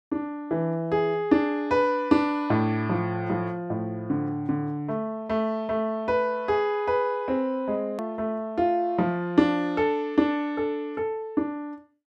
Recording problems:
click at an edit; at 8 s

